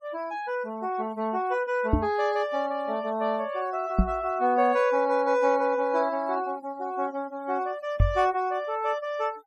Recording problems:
denoising artefacts; signal-to-artefact ratio 22 dB
knock on the microphone; at 2 s, at 4 s and at 8 s; peak +8 dB vs average level

